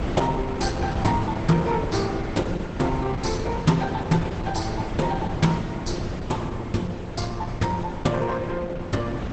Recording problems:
lossy codec; Opus, log-spectral distance 4 dB, nothing above 8 kHz
wind noise; below 420 Hz, SNR 6 dB

